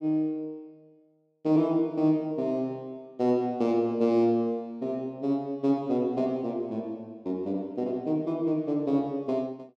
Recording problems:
none

